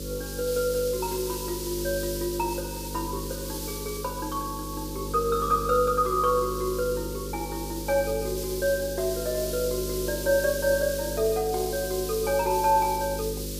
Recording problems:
hum; 50 Hz, harmonics up to 550 Hz, SNR 9 dB
hiss; SNR 9 dB

